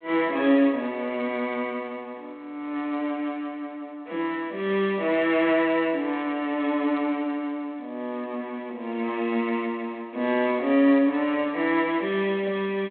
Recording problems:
telephone audio; 220 Hz to 3.5 kHz, G.726

